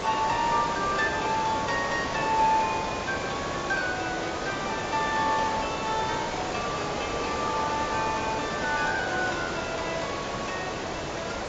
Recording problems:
lossy codec; AAC, log-spectral distance 11 dB, nothing above 7.6 kHz
hiss; SNR 3 dB

